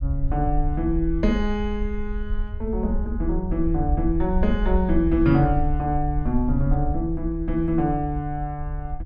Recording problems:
low-frequency rumble; below 60 Hz, SNR 5 dB

